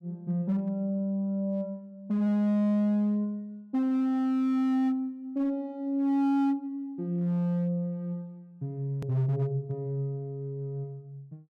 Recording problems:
distorted audio; hard clipping, signal-to-distortion ratio 11 dB
click at an edit; at 9 s

